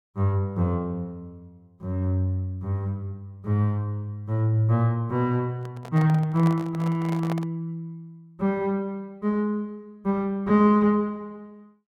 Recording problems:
handling noise; from 5.5 to 7.5 s; peak -5 dB vs average level

